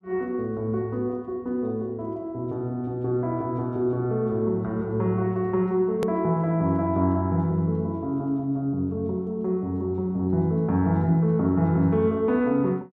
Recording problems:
edit click; at 6 s

